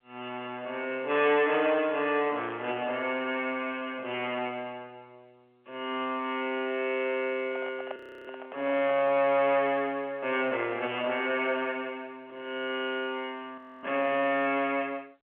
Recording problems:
phone line; 320 Hz to 3.4 kHz, G.711
distortion; soft clipping, signal-to-distortion ratio 12 dB
microphone handling noise; from 7.5 to 9 s; peak -5 dB vs average level
audio freezing; at 8 s and at 14 s

